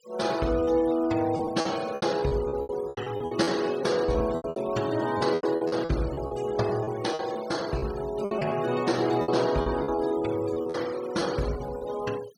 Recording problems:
denoising artefacts; signal-to-artefact ratio 17 dB
lost packets; 13% of the sound replaced, filled with repeated pitch periods

